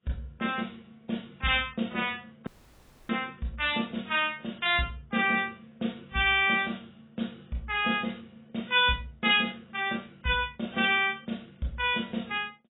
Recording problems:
codec artefacts; AAC, log-spectral distance 6 dB, nothing above 3.6 kHz
audio cutting out; at 2.5 s for 0.5 s

